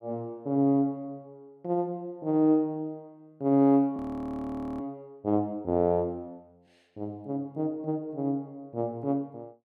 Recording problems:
frozen audio; at 4 s for 1 s

